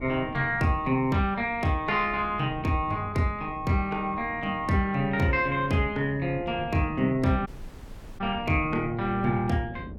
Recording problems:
wind noise; below 240 Hz, SNR 16 dB
audio cutting out; at 7.5 s for 0.5 s

